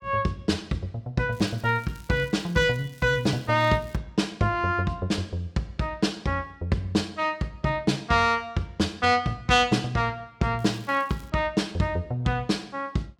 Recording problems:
crackling; from 1.5 to 4 s and at 11 s; loose cable, SNR 27 dB

